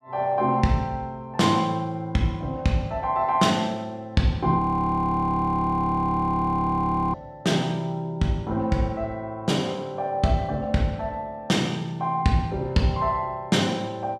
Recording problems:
audio freezing; at 4.5 s for 2.5 s

